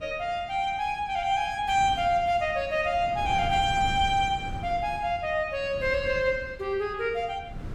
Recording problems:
wind noise; below 180 Hz, SNR 14 dB

